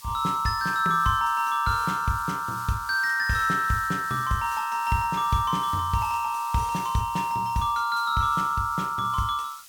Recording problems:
hiss; slope +4 dB per octave, SNR 19 dB

